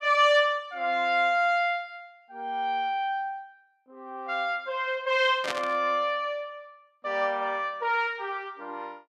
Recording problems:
static burst; at 5.5 s; peak 0 dB vs average level

